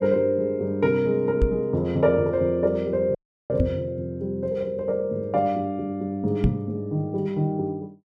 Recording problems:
microphone thump; at 1.5 s, at 3.5 s and at 6.5 s; peak +6 dB vs average level
audio cutting out; at 3 s

